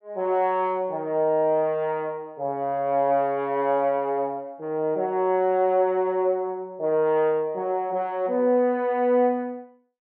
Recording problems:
none

